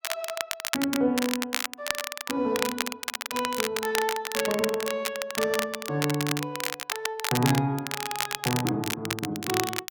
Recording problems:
crackling; vinyl, SNR 2 dB

